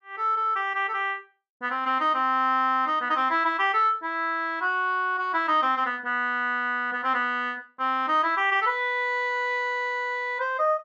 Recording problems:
none

